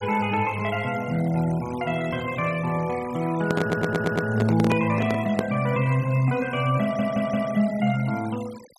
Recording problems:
denoising artefacts; signal-to-artefact ratio 19 dB
microphone handling noise; from 3.5 to 5.5 s; peak +2 dB vs average level
stutter; at 3.5 s and at 7 s

